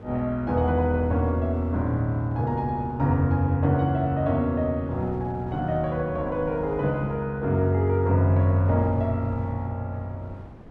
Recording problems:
wind noise; below 350 Hz, SNR 20 dB

